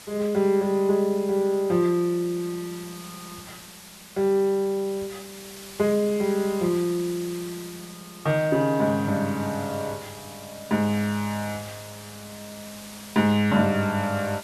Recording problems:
hiss; slope 0 dB per octave, SNR 17 dB

